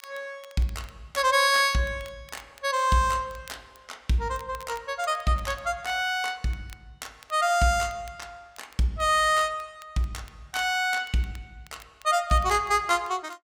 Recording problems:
crackle; vinyl, SNR 28 dB

